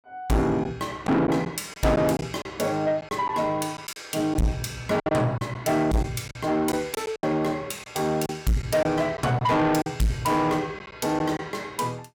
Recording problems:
distortion; soft clipping, signal-to-distortion ratio 7 dB
lost packets; 6% of the sound replaced, filled with silence

